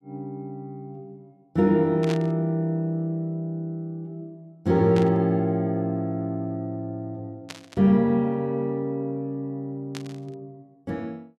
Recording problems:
burst of static; 4 times, first at 2 s; peak -5 dB vs average level

